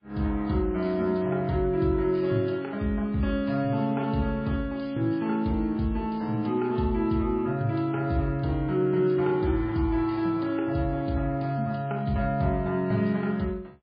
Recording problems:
codec artefacts; MP3, log-spectral distance 2 dB

